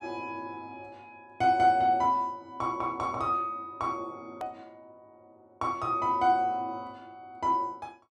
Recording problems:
click at an edit; at 4.5 s

